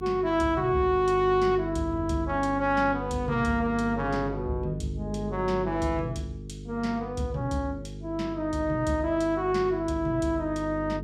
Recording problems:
hum; 50 Hz, harmonics up to 450 Hz, SNR 10 dB

